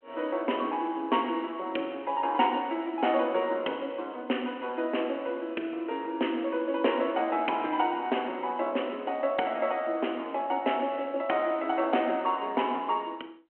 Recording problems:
phone line; 240 Hz to 3.2 kHz, G.726

